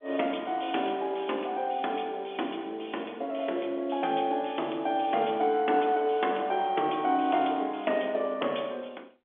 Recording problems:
phone line; 260 Hz to 3.5 kHz, G.711

